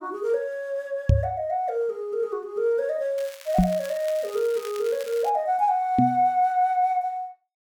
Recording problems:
knock on the microphone; at 1 s, at 3.5 s and at 6 s; peak +9 dB vs average level
crackle; from 3 to 5.5 s; loose cable, SNR 17 dB

